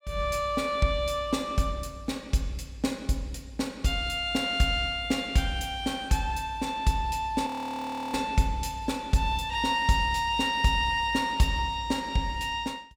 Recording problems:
audio freezing; at 7.5 s for 0.5 s

